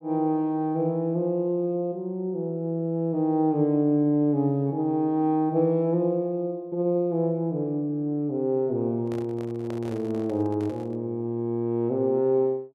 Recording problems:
handling noise; from 9 to 11 s; peak -10 dB vs average level

